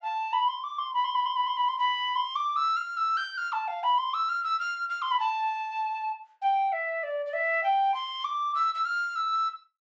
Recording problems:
low-pass filter; nothing above 8 kHz

